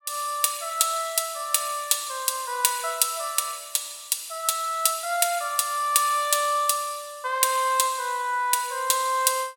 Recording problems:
none

